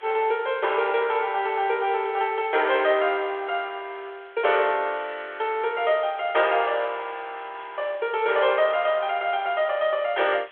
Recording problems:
phone line; 320 Hz to 3.5 kHz, G.726
background hiss; SNR 26 dB

